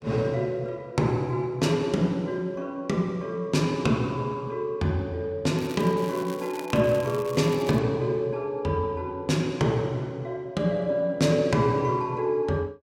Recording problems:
crackle; from 5.5 to 8 s; loose cable, SNR 18 dB

